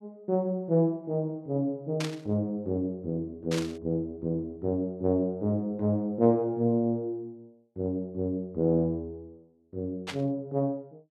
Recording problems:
static burst; at 2 s, at 3.5 s and at 10 s; peak -1 dB vs average level

